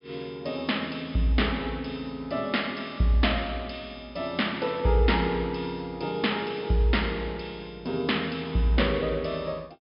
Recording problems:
treble missing; nothing above 5.5 kHz

